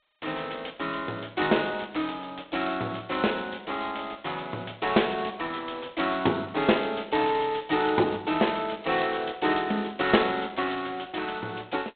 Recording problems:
telephone audio; 240 Hz to 3.9 kHz, G.726

